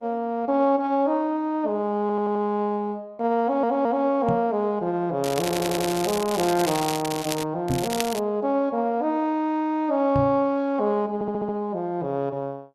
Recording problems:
lossy compression; Opus, log-spectral distance 2 dB
stutter; 4 times, first at 2 s
knock on the microphone; at 4.5 s, at 7.5 s and at 10 s; peak +2 dB vs average level
crackling; from 5 to 7.5 s and at 7.5 s; loose cable, SNR 8 dB

